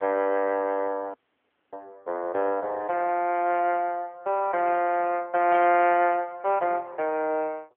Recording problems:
telephone audio; 220 Hz to 3.1 kHz, AMR-NB
dropout; at 1 s for 0.5 s
burst of static; at 5.5 s; peak -8 dB vs average level

